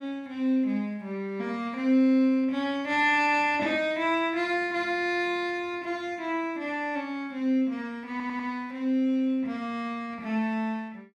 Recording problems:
stutter; at 8 s

